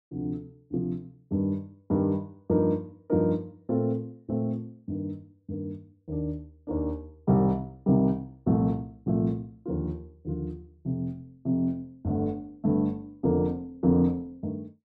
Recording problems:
none

